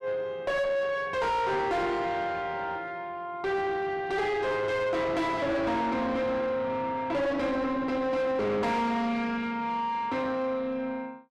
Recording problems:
distortion; soft clipping, signal-to-distortion ratio 7 dB

